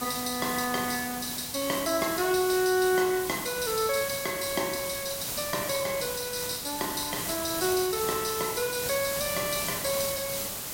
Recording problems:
background hiss; slope -1 dB per octave, SNR 4 dB

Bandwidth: 16.5 kHz